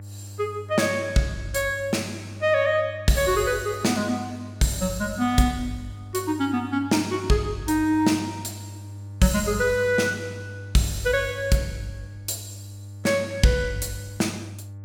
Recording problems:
mains hum; 50 Hz, harmonics up to 600 Hz, SNR 15 dB

